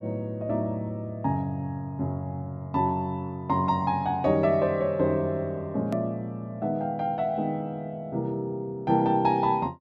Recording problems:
edit click; at 6 s

